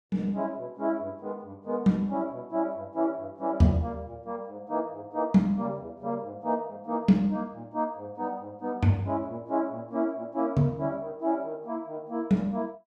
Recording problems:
none

